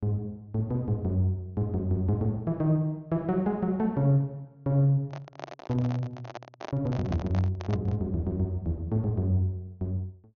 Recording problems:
treble missing; nothing above 6.7 kHz
handling noise; from 5 to 8 s; peak -4 dB vs average level

